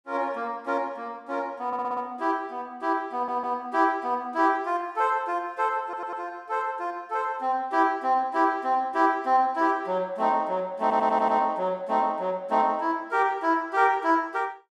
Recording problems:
stutter; 4 times, first at 1.5 s

